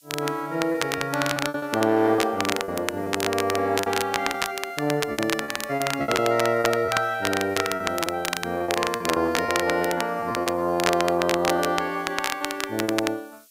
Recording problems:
hiss; SNR 27 dB
crackling; vinyl, SNR 5 dB
packet loss; 12% of the sound replaced, filled with repeated pitch periods

